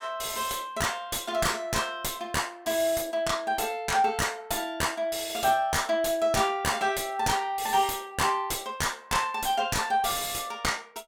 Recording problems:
distorted audio; soft clipping, signal-to-distortion ratio 5 dB

